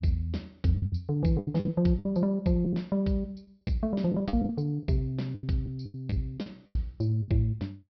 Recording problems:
low-pass filter; nothing above 5.5 kHz
lost packets; 11% of the sound replaced, filled with the last packet

